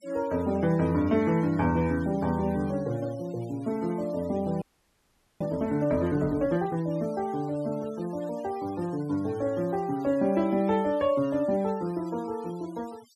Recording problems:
noise reduction artefacts; signal-to-artefact ratio 22 dB
audio freezing; at 4.5 s for 1 s

